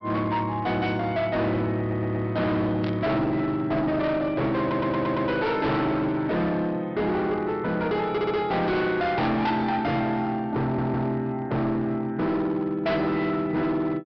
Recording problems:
low-pass filter; nothing above 5.5 kHz
distortion; hard clipping, signal-to-distortion ratio 8 dB
stutter; 4 times, first at 2 s
static burst; at 3 s; peak -10 dB vs average level

